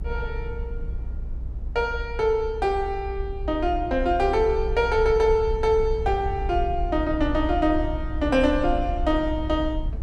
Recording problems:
low-frequency rumble; below 60 Hz, SNR 8 dB

